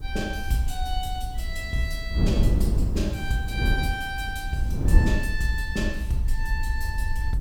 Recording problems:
background hiss; SNR 27 dB
low-frequency rumble; below 60 Hz, SNR 3 dB
wind on the microphone; below 120 Hz, SNR -4 dB

